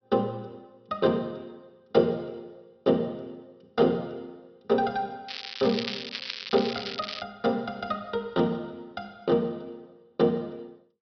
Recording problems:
treble cut off; nothing above 5.5 kHz
crackling; from 5.5 to 7 s; loose cable, SNR 7 dB

